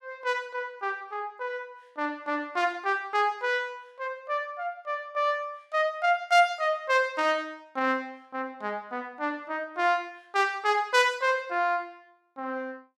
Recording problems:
none

